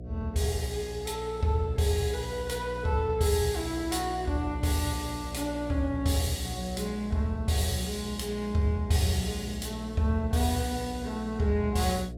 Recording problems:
electrical hum; 60 Hz, harmonics up to 720 Hz, SNR 11 dB

